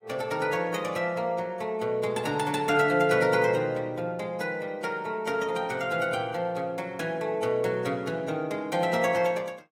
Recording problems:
codec artefacts; AAC, log-spectral distance 2 dB, nothing above 15.5 kHz

